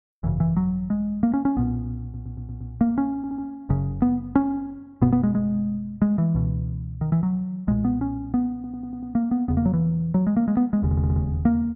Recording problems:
stutter; 4 times, first at 2 s

